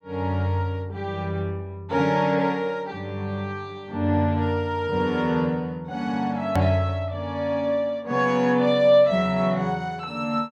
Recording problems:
edit click; at 6.5 s

